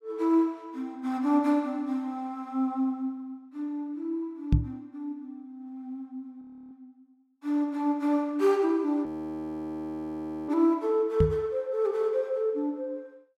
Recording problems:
microphone thump; at 4.5 s and at 11 s; peak +10 dB vs average level
frozen audio; at 6.5 s and at 9 s for 1.5 s

